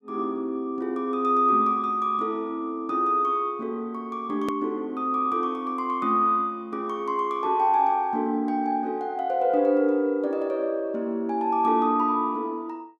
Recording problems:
edit click; at 4.5 s

